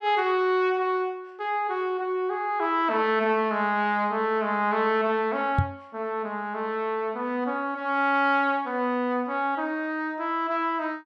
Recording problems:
microphone bump; at 5.5 s; peak +6 dB vs average level

